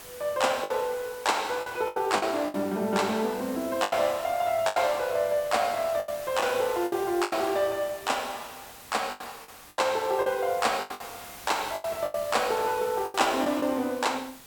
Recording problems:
background hiss; slope -2 dB per octave, SNR 16 dB
lost packets; 9% of the sound replaced, filled with the last packet

